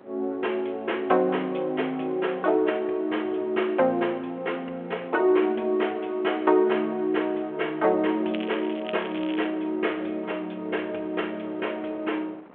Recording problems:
phone line; 320 Hz to 3.3 kHz, G.726
wind noise; below 880 Hz, SNR 23 dB
crackle; from 8.5 to 9.5 s; loose cable, SNR 16 dB

